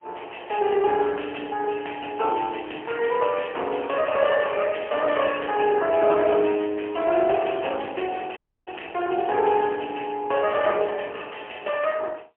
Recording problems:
phone line; 320 Hz to 3.1 kHz, AMR-NB, then MP3
audio cutting out; at 8.5 s

